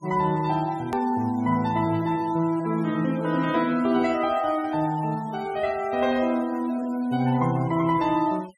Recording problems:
noise reduction artefacts; signal-to-artefact ratio 22 dB
click at an edit; at 1 s

